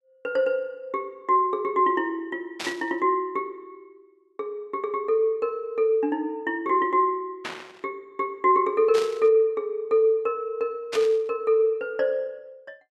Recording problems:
static burst; 4 times, first at 2.5 s; peak -3 dB vs average level

